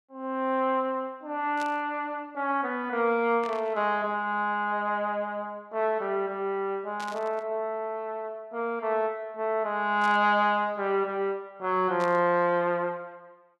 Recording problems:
static burst; 5 times, first at 1.5 s; peak -10 dB vs average level

